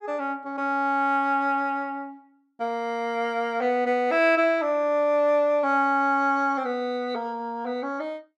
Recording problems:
none

